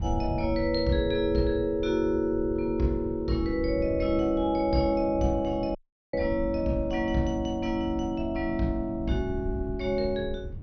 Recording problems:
treble missing; nothing above 6 kHz
wind noise; below 110 Hz, SNR 11 dB
audio cutting out; at 6 s

